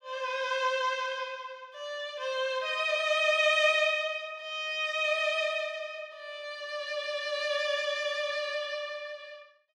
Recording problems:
none

